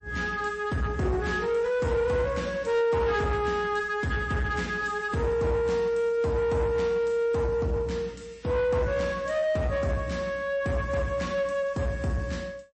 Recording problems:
lossy compression; MP3, log-spectral distance 2 dB, nothing above 8.2 kHz
distorted audio; soft clipping, signal-to-distortion ratio 11 dB

